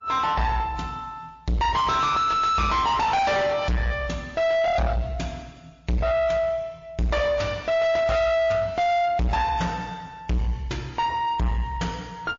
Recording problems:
codec artefacts; MP3, then MP3, log-spectral distance 2 dB, nothing above 7.1 kHz
distorted audio; soft clipping, signal-to-distortion ratio 5 dB

